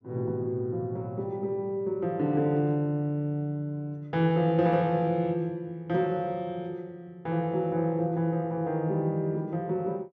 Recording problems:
none

